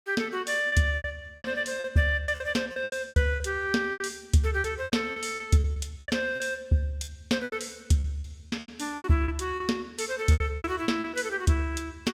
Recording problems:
packet loss; 15% of the sound replaced, filled with repeated pitch periods

